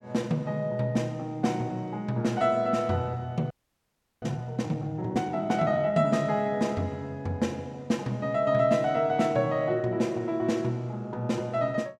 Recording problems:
audio freezing; at 3.5 s for 0.5 s

